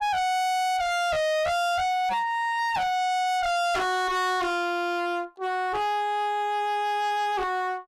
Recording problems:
distortion; hard clipping, uneven, signal-to-distortion ratio 4 dB

